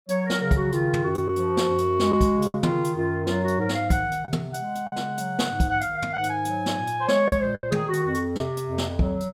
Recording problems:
packet loss; 4% of the sound replaced, filled with the last packet

